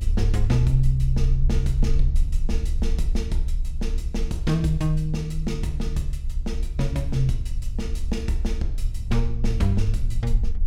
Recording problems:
rumble; below 66 Hz, strongest tone 28 Hz, SNR 1 dB

